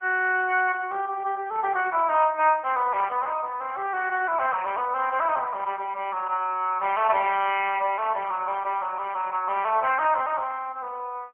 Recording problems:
telephone audio; 370 Hz to 3.3 kHz, AMR-NB, then MP3

